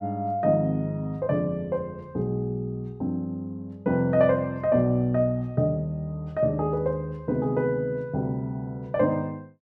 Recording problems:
none

